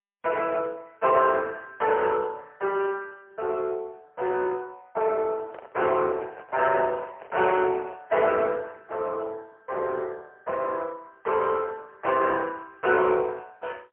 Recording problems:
telephone audio; 340 Hz to 2.6 kHz, AMR-NB, then MP3
microphone handling noise; from 5.5 to 8.5 s; peak -11 dB vs average level

